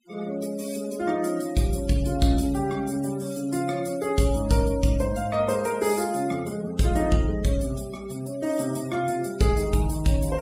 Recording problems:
denoising artefacts; signal-to-artefact ratio 19 dB

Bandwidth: 16 kHz